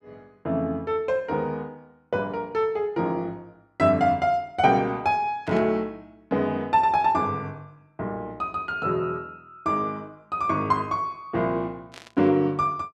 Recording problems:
static burst; at 5.5 s and at 12 s; peak -12 dB vs average level

